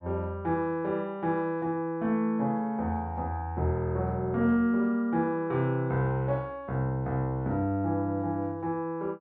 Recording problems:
none

